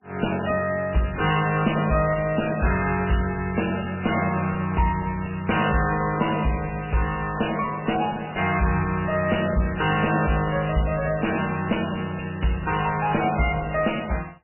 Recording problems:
lossy compression; MP3, log-spectral distance 8 dB, nothing above 2.9 kHz
distortion; soft clipping, signal-to-distortion ratio 9 dB

